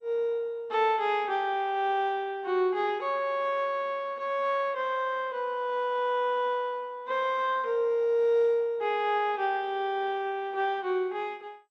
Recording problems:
codec artefacts; MP2, log-spectral distance 2 dB

